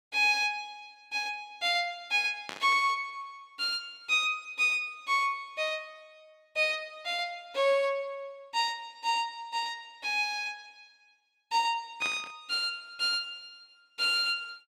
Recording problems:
static burst; at 2.5 s and at 12 s; peak -5 dB vs average level

